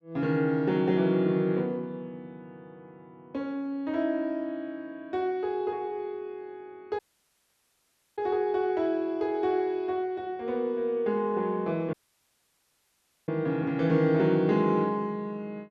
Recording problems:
dropout; at 7 s for 1 s and at 12 s for 1.5 s

